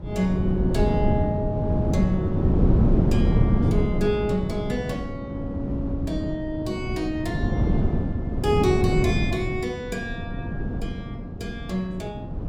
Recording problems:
wind noise; below 230 Hz, SNR -3 dB

